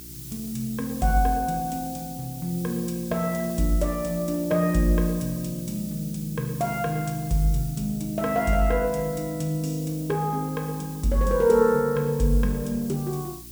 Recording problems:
electrical hum; 60 Hz, harmonics up to 360 Hz, SNR 22 dB
hiss; slope +5 dB per octave, SNR 14 dB

